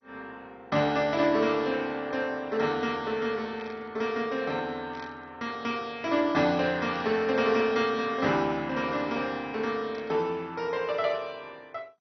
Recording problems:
codec artefacts; MP2, log-spectral distance 3 dB, nothing above 5.3 kHz
burst of static; 4 times, first at 3.5 s; peak -14 dB vs average level

